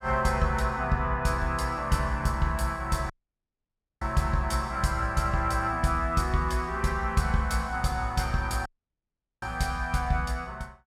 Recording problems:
audio cutting out; at 3 s for 1 s and at 8.5 s for 1 s

